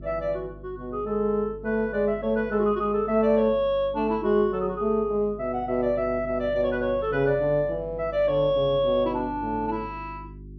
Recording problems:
treble cut off; nothing above 5.8 kHz
hum; 50 Hz, harmonics up to 400 Hz, SNR 19 dB

